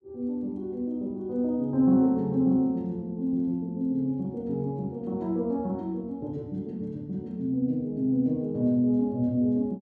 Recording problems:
none

